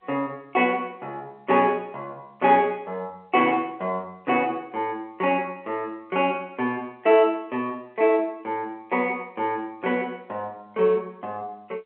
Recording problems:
telephone audio; 280 Hz to 3.2 kHz, G.711

